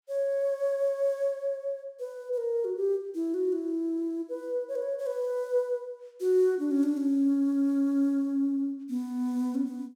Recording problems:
none

